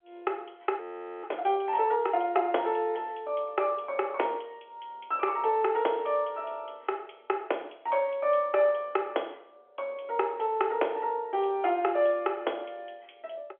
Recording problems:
telephone audio; 300 Hz to 3.4 kHz, G.711
frozen audio; at 1 s

